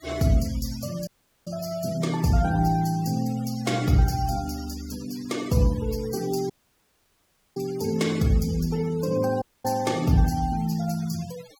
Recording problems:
denoising artefacts; signal-to-artefact ratio 19 dB
dropout; at 1 s, at 6.5 s for 1 s and at 9.5 s

